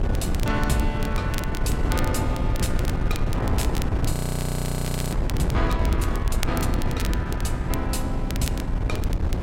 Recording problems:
electrical hum; 60 Hz, harmonics up to 720 Hz, SNR 9 dB
wind on the microphone; below 150 Hz, SNR -4 dB
crackle; vinyl, SNR 8 dB
frozen audio; at 4 s for 1 s

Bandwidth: 16 kHz